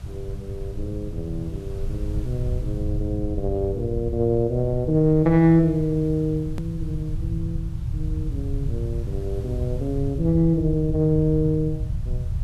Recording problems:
hiss; slope -4 dB per octave, SNR 28 dB
low-frequency rumble; below 110 Hz, SNR 7 dB
edit click; at 6.5 s

